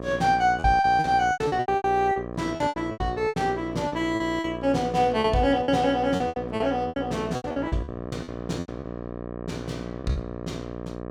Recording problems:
hum; 60 Hz, harmonics up to 1.8 kHz, SNR 10 dB
packet loss; 16% of the sound replaced, filled with repeated pitch periods

